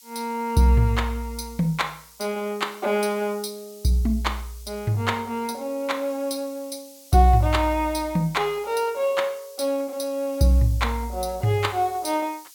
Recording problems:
hiss; SNR 22 dB

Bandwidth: 17 kHz